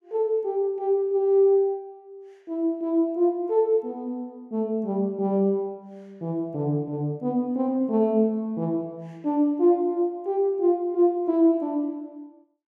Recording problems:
none

